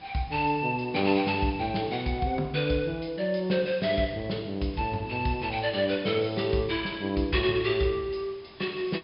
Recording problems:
treble missing; nothing above 5.5 kHz
hiss; slope -3 dB per octave, SNR 24 dB

